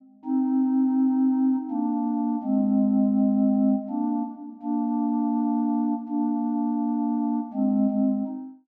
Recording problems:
none

